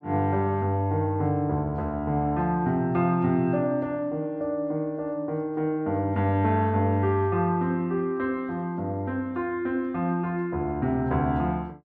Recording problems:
none

